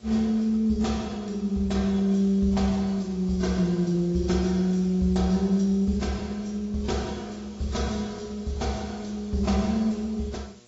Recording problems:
codec artefacts; AAC, log-spectral distance 3 dB, nothing above 7.6 kHz
electrical hum; 60 Hz, harmonics up to 1.9 kHz, SNR 32 dB
hiss; slope +4 dB per octave, SNR 28 dB

